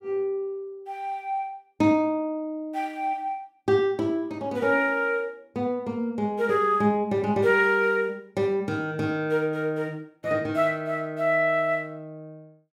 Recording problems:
none

